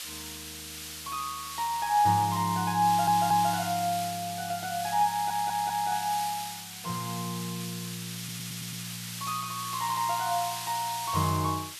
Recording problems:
hiss; SNR 8 dB
audio stuttering; at 3 s, at 5 s and at 8 s

